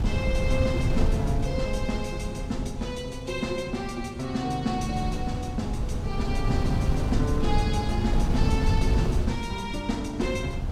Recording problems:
wind noise; below 130 Hz, SNR -2 dB

